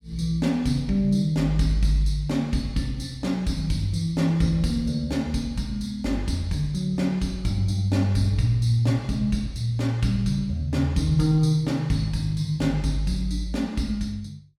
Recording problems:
none

